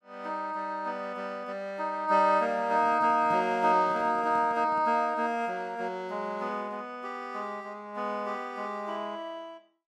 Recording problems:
handling noise; from 2.5 to 5 s; peak -9 dB vs average level

